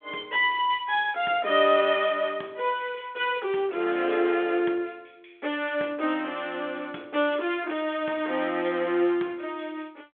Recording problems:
phone line; 260 Hz to 3.4 kHz, G.726

